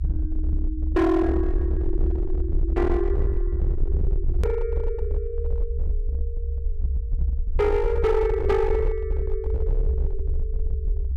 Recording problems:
distortion; hard clipping, signal-to-distortion ratio 10 dB
low-frequency rumble; below 68 Hz, SNR 1 dB
hard cut with a click; at 4.5 s

